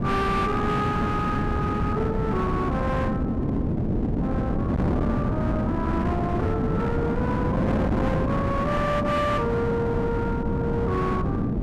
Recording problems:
distortion; hard clipping, signal-to-distortion ratio 8 dB
wind on the microphone; below 330 Hz, SNR -1 dB

